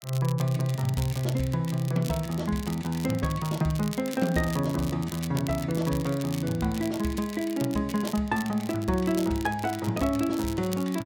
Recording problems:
crackle; vinyl, SNR 15 dB

